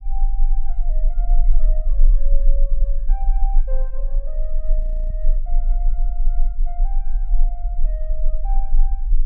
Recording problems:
low-frequency rumble; below 32 Hz, strongest tone 22 Hz, SNR -18 dB
audio freezing; at 5 s

